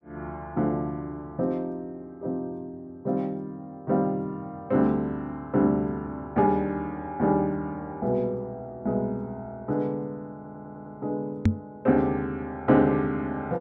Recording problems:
stutter; at 10 s
knock on the microphone; at 11 s; peak +10 dB vs average level

